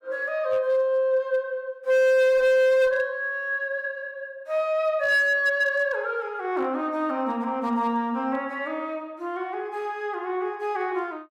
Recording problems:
distorted audio; hard clipping, signal-to-distortion ratio 11 dB

